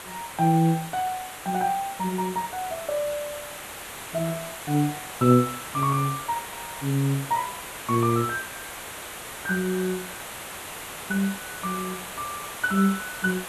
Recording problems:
hiss; SNR 9 dB

